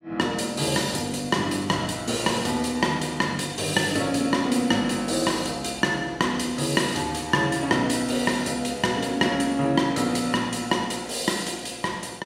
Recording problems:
none

